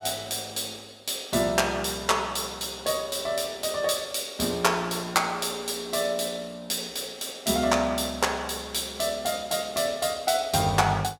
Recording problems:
none

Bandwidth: 17 kHz